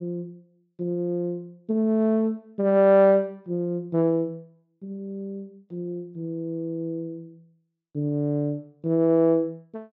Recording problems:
treble missing; nothing above 8 kHz

